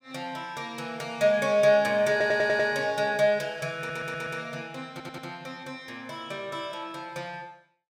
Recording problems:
audio stuttering; at 2 s, at 4 s and at 5 s

